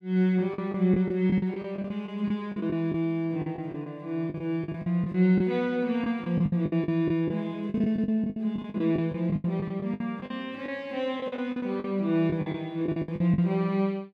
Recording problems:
packet loss; 15% of the sound replaced, filled with the last packet

